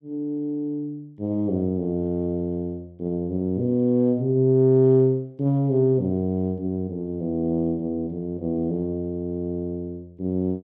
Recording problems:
none

